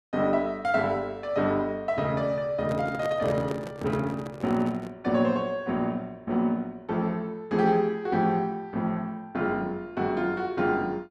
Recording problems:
handling noise; from 2.5 to 5 s; peak -3 dB vs average level

